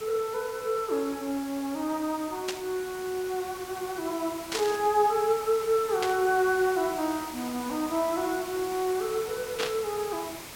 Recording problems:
background hiss; slope -2 dB per octave, SNR 12 dB
burst of static; 4 times, first at 2.5 s; peak +2 dB vs average level

